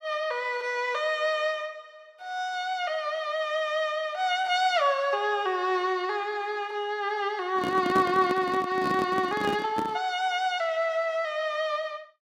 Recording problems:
microphone handling noise; from 7.5 to 10 s; peak +1 dB vs average level

